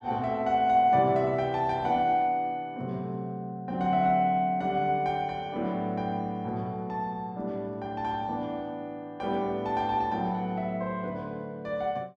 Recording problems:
none

